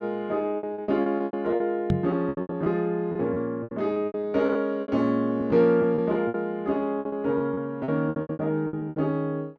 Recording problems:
lost packets; 17% of the sound replaced, filled with repeated pitch periods
microphone thump; at 2 s; peak +5 dB vs average level

